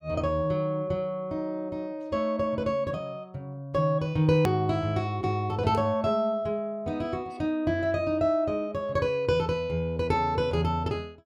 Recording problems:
hard cut with a click; at 4.5 s

